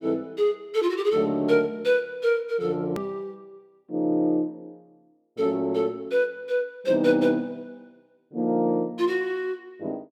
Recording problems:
edit click; at 3 s

